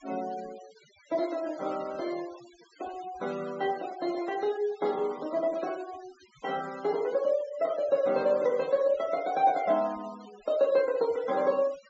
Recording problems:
treble cut off; nothing above 8 kHz
noise reduction artefacts; signal-to-artefact ratio 20 dB

